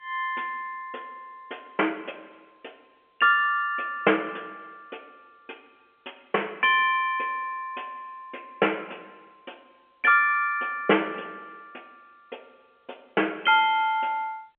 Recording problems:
phone line; 340 Hz to 3.2 kHz, G.711

